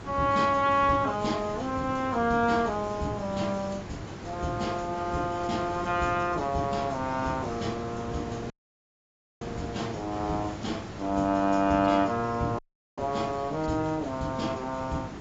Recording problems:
lossy compression; AAC, log-spectral distance 5 dB, nothing above 7.3 kHz
electrical hum; 50 Hz, harmonics up to 700 Hz, SNR 20 dB
background hiss; slope -7 dB per octave, SNR 11 dB
dropout; at 8.5 s for 1 s and at 13 s

